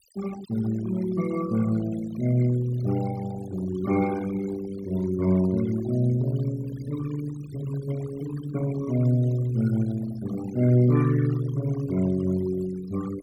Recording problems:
denoising artefacts; signal-to-artefact ratio 16 dB

